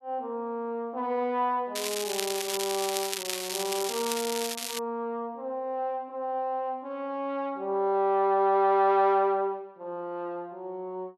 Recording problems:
crackle; from 2 to 5 s; loose cable, SNR 3 dB

